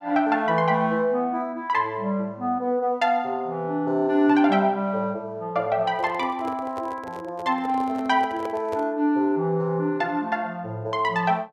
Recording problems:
microphone handling noise; from 6 to 9 s; peak -7 dB vs average level

